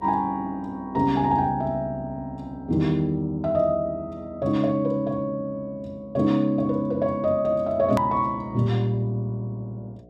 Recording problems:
electrical hum; 60 Hz, harmonics up to 720 Hz, SNR 25 dB
hard cut with a click; at 8 s

